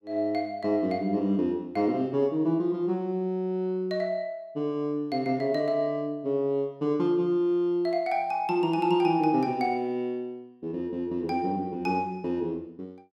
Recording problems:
none

